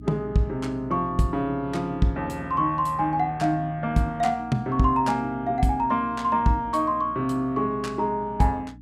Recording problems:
electrical hum; 60 Hz, harmonics up to 300 Hz, SNR 19 dB

